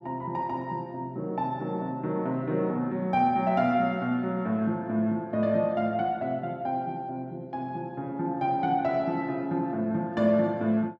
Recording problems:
none

